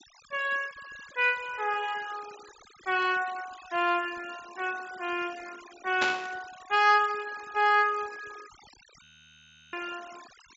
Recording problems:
low-pass filter; nothing above 8 kHz
denoising artefacts; signal-to-artefact ratio 20 dB
burst of static; at 6 s; peak +3 dB vs average level
audio freezing; at 9 s for 0.5 s

